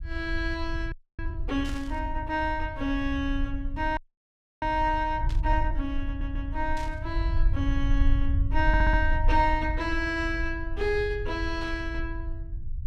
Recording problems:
rumble; below 60 Hz, SNR 2 dB
audio freezing; at 1 s and at 4 s for 0.5 s
static burst; 4 times, first at 1.5 s; peak -10 dB vs average level
audio stuttering; at 6 s and at 8.5 s

